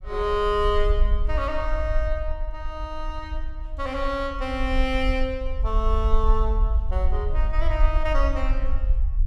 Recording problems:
rumble; below 52 Hz, SNR -1 dB

